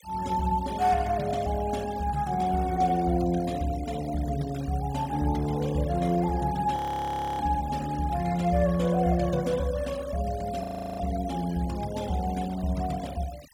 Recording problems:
denoising artefacts; signal-to-artefact ratio 19 dB
audio freezing; at 7 s for 0.5 s and at 11 s

